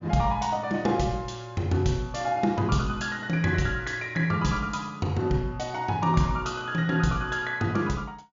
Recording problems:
treble cut off; nothing above 7.2 kHz

